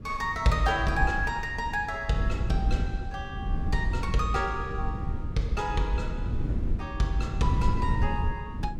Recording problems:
wind noise; below 110 Hz, SNR 3 dB

